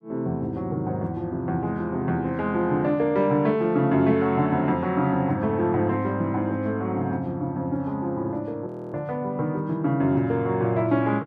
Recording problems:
audio freezing; at 8.5 s

